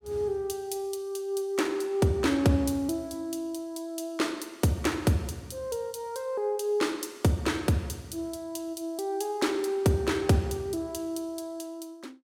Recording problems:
none

